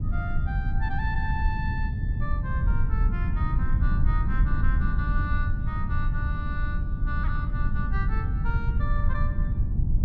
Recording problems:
low-frequency rumble; below 92 Hz, SNR -9 dB

